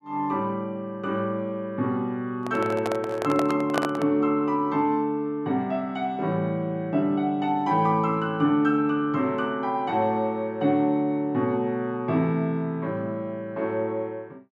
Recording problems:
handling noise; from 2.5 to 4 s; peak +4 dB vs average level

